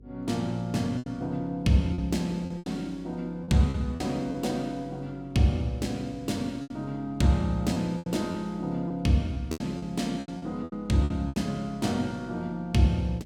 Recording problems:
hum; 50 Hz, harmonics up to 500 Hz, SNR 24 dB
lost packets; 8% of the sound replaced, filled with repeated pitch periods

